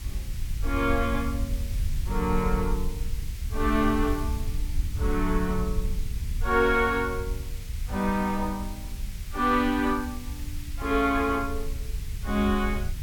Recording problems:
hiss; SNR 18 dB
wind noise; below 72 Hz, SNR 6 dB

